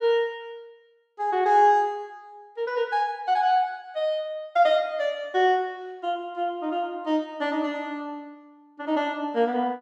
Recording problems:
none

